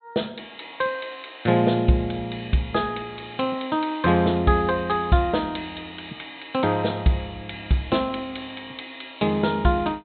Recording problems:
treble missing; nothing above 4.1 kHz

